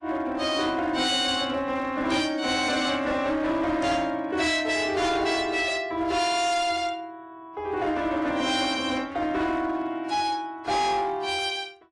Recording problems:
lossy compression; AAC, log-spectral distance 3 dB, nothing above 10.4 kHz
distorted audio; hard clipping, signal-to-distortion ratio 11 dB

